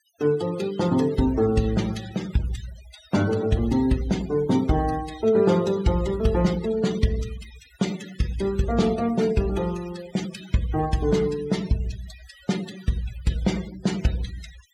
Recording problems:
noise reduction artefacts; signal-to-artefact ratio 16 dB

